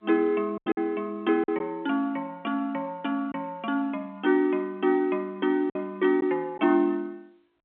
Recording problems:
telephone audio; 260 Hz to 3.5 kHz, G.711
lost packets; 4% of the sound replaced, filled with silence

